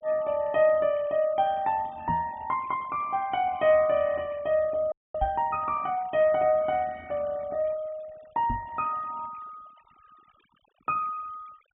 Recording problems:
treble missing; nothing above 3.5 kHz
noise reduction artefacts; signal-to-artefact ratio 25 dB
microphone thump; at 2 s, at 5 s and at 8.5 s; peak -3 dB vs average level
audio freezing; at 5 s

